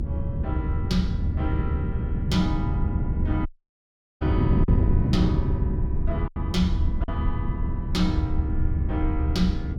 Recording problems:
low-frequency rumble; below 74 Hz, strongest tone 72 Hz, SNR 0 dB
wind on the microphone; below 160 Hz, SNR -3 dB
packet loss; 1.6% of the sound replaced, filled with silence
audio cutting out; at 3.5 s for 1 s

